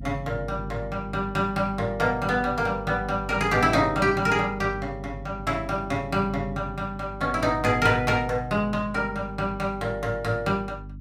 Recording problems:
electrical hum; 50 Hz, harmonics up to 300 Hz, SNR 13 dB

